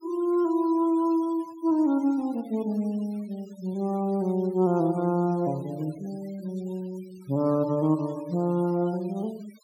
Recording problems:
noise reduction artefacts; signal-to-artefact ratio 26 dB

